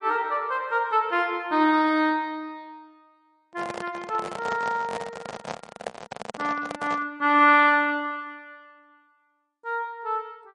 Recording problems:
lossy compression; MP3, log-spectral distance 2 dB
handling noise; from 3.5 to 7 s; peak -3 dB vs average level

